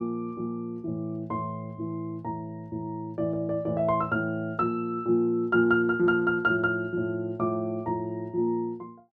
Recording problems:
none

